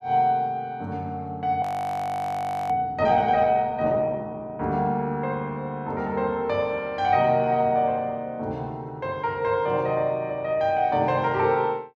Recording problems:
audio freezing; at 1.5 s for 1 s

